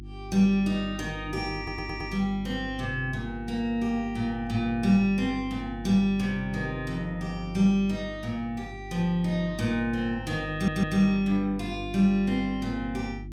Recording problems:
electrical hum; 50 Hz, harmonics up to 350 Hz, SNR 13 dB
audio stuttering; at 1.5 s and at 11 s

